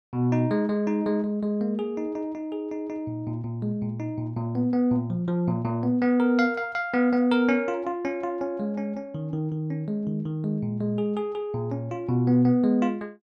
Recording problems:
none

